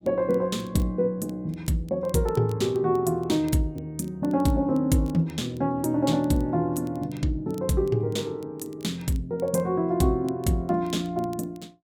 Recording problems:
crackling; vinyl, SNR 29 dB

